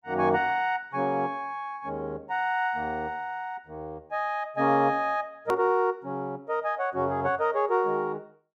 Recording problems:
edit click; at 5.5 s

